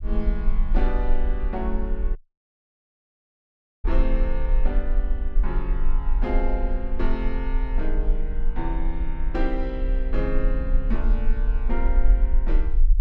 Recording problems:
rumble; below 38 Hz, strongest tone 22 Hz, SNR -5 dB
audio cutting out; at 2 s for 1.5 s

